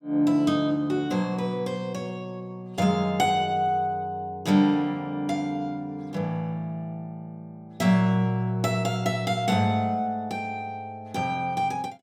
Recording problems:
none

